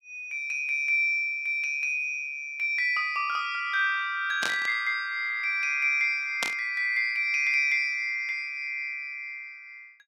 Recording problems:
static burst; at 4.5 s and at 6.5 s; peak +1 dB vs average level

